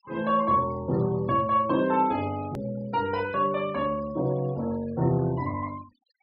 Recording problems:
treble cut off; nothing above 5.5 kHz
noise reduction artefacts; signal-to-artefact ratio 23 dB
click at an edit; at 2.5 s

